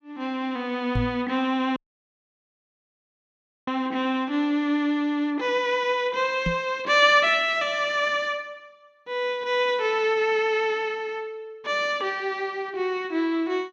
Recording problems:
knock on the microphone; at 1 s and at 6.5 s; peak +1 dB vs average level
audio cutting out; at 2 s for 2 s

